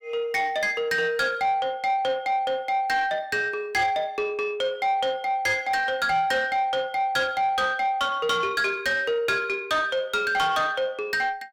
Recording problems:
distortion; soft clipping, signal-to-distortion ratio 11 dB

